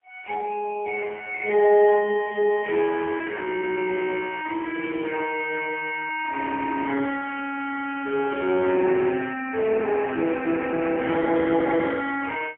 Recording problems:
phone line; 220 Hz to 3 kHz, AMR-NB, then MP3
burst of static; at 5.5 s; peak -11 dB vs average level

